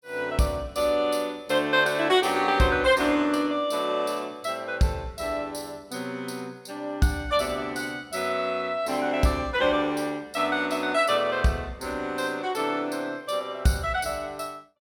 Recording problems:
none

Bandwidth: 17 kHz